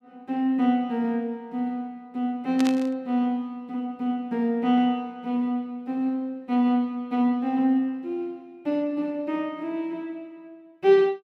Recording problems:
static burst; at 2.5 s; peak -4 dB vs average level

